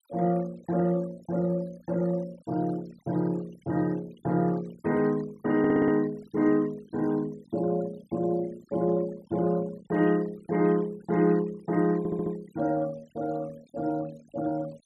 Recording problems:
noise reduction artefacts; signal-to-artefact ratio 22 dB
audio stuttering; at 5.5 s and at 12 s

